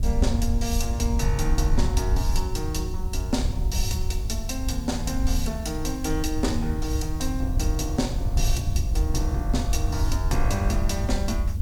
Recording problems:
background hiss; slope +1 dB per octave, SNR 22 dB
wind on the microphone; below 76 Hz, SNR -2 dB

